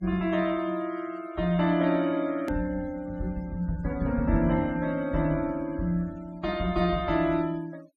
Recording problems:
noise reduction artefacts; signal-to-artefact ratio 24 dB
click at an edit; at 2.5 s

